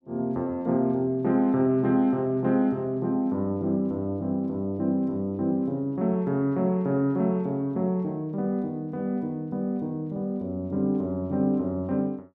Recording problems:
none

